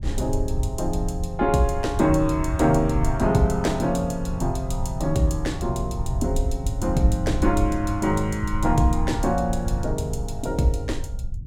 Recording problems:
rumble; below 88 Hz, SNR 6 dB

